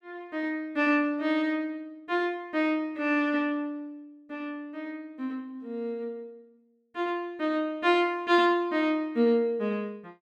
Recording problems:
none

